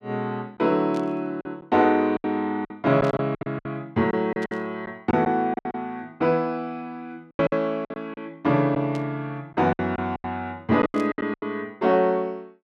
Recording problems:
lost packets; 11% of the sound replaced, filled with silence
static burst; 5 times, first at 1 s; peak -12 dB vs average level

